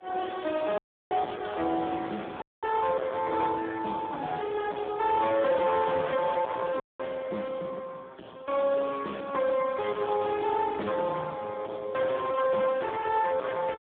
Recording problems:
telephone audio; 260 Hz to 3.6 kHz, Speex
distortion; hard clipping, signal-to-distortion ratio 11 dB
audio cutting out; at 1 s, at 2.5 s and at 7 s

